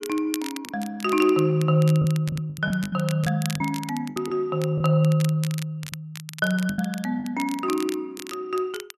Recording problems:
crackling; vinyl, SNR 15 dB
lost packets; 8% of the sound replaced, filled with the last packet

